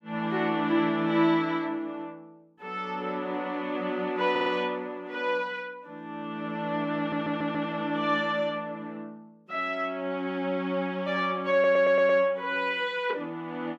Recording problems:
stutter; at 4.5 s, at 7 s and at 12 s

